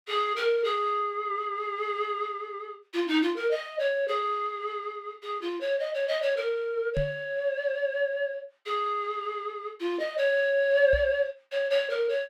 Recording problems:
microphone bump; at 7 s and at 11 s; peak 0 dB vs average level

